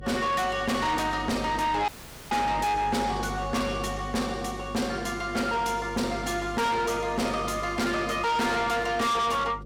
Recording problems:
distorted audio; soft clipping, signal-to-distortion ratio 6 dB
hum; 50 Hz, harmonics up to 550 Hz, SNR 13 dB
audio cutting out; at 2 s

